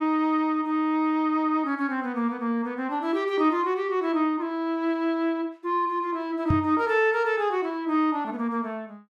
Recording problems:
microphone bump; at 6.5 s; peak +5 dB vs average level

